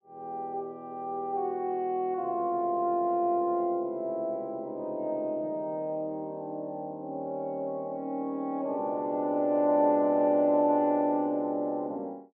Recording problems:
none

